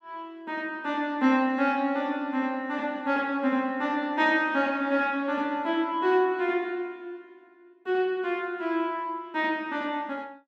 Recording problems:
none

